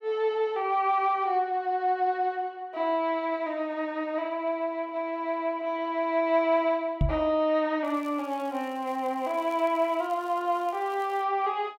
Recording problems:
knock on the microphone; at 7 s; peak +5 dB vs average level
crackling; from 8 to 11 s; loose cable, SNR 27 dB

